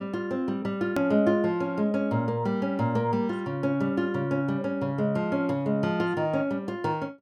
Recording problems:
edit click; at 1 s

